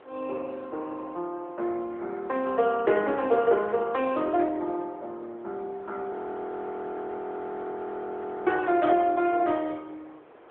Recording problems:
phone line; 280 Hz to 3.5 kHz, AMR-NB
wind noise; below 1.2 kHz, SNR 23 dB
audio freezing; at 6 s for 2.5 s

